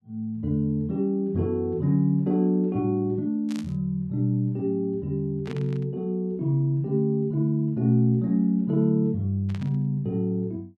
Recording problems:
burst of static; at 3.5 s, at 5.5 s and at 9.5 s; peak -13 dB vs average level

